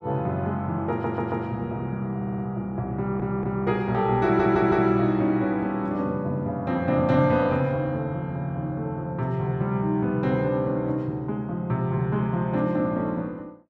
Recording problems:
audio stuttering; 4 times, first at 1 s

